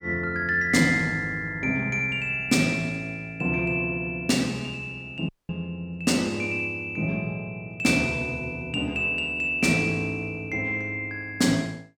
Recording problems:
audio cutting out; at 5.5 s

